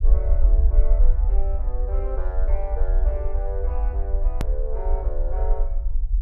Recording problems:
rumble; below 50 Hz, SNR -11 dB
hard cut with a click; at 4.5 s

